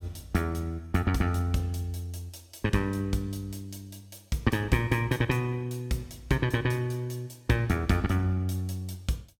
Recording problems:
none

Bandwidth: 17 kHz